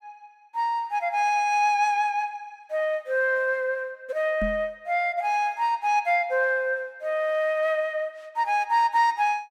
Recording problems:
knock on the microphone; at 4.5 s; peak -3 dB vs average level

